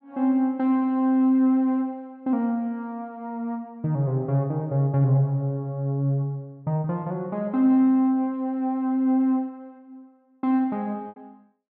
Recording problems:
packet loss; 1.1% of the sound replaced, filled with repeated pitch periods

